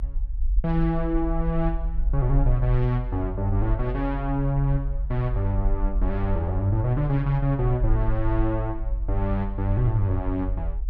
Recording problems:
rumble; below 46 Hz, SNR 4 dB

